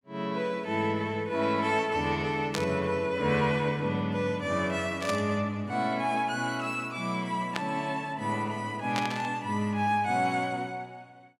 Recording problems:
static burst; 4 times, first at 2.5 s; peak +1 dB vs average level

